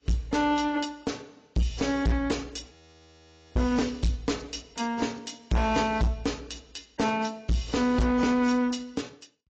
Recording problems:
lossy compression; AAC, log-spectral distance 5 dB, nothing above 7.3 kHz
distorted audio; hard clipping, signal-to-distortion ratio 7 dB
audio freezing; at 2.5 s for 1 s

